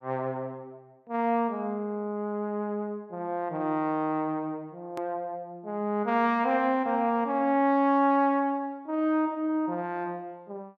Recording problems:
hard cut with a click; at 5 s

